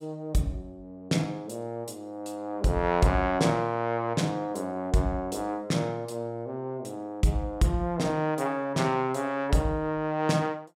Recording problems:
none

